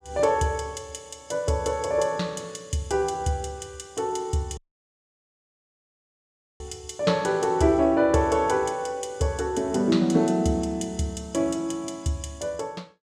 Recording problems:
dropout; at 4.5 s for 2 s

